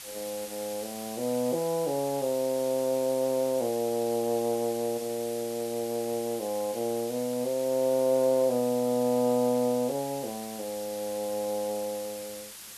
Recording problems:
hiss; slope +2 dB per octave, SNR 12 dB

